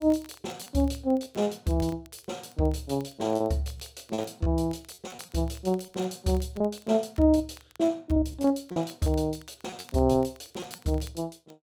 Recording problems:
crackling; vinyl, SNR 26 dB
packet loss; 8% of the sound replaced, filled with repeated pitch periods

